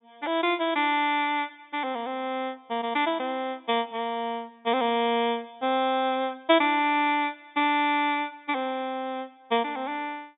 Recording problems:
treble cut off; nothing above 4 kHz

